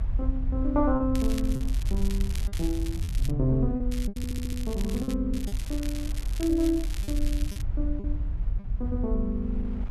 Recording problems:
rumble; below 62 Hz, SNR 1 dB
wind on the microphone; below 500 Hz, SNR 20 dB
packet loss; 5% of the sound replaced, filled with repeated pitch periods
crackle; from 1 to 3.5 s, from 4 to 5 s and from 5.5 to 7.5 s; loose cable, SNR 13 dB
stutter; at 4 s

